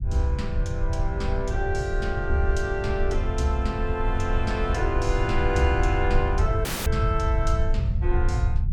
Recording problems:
rumble; below 88 Hz, SNR 0 dB
dropout; at 6.5 s

